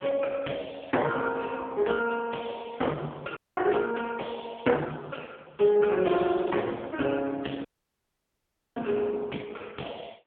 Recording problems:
phone line; 190 Hz to 3.4 kHz, AMR-NB
dropout; at 3.5 s and at 7.5 s for 1 s

